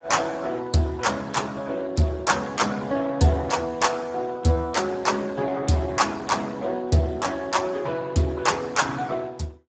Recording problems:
lossy codec; Speex, log-spectral distance 4 dB, nothing above 7.6 kHz

